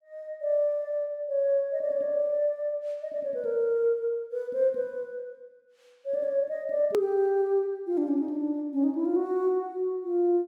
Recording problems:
edit click; at 7 s

